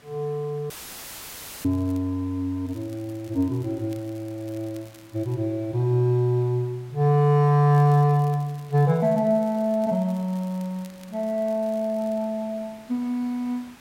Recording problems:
hiss; slope -3 dB per octave, SNR 27 dB
dropout; at 0.5 s for 1 s; filled with static
crackle; at 1.5 s, from 2.5 to 5.5 s and from 7.5 to 12 s; loose cable, SNR 29 dB

